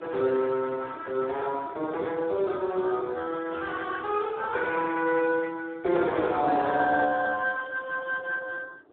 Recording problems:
telephone audio; 280 Hz to 3.8 kHz, Speex
wind on the microphone; below 590 Hz, SNR 23 dB

